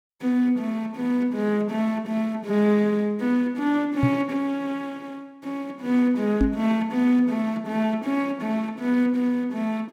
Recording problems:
microphone thump; at 4 s and at 6.5 s; peak +6 dB vs average level

